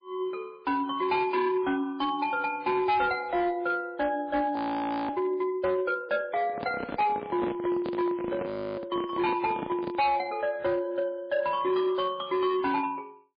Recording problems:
lossy compression; MP3, log-spectral distance 2 dB, nothing above 4.5 kHz
distorted audio; hard clipping, signal-to-distortion ratio 12 dB
audio freezing; at 4.5 s for 0.5 s and at 8.5 s
handling noise; from 6.5 to 10 s; peak -1 dB vs average level

